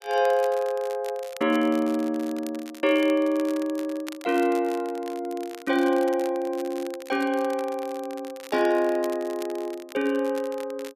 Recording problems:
crackling; vinyl, SNR 19 dB

